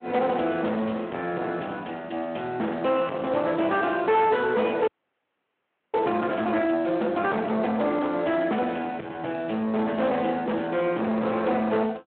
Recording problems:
telephone audio; 240 Hz to 3.3 kHz, Speex
distorted audio; soft clipping, signal-to-distortion ratio 9 dB
frozen audio; at 5 s for 1 s

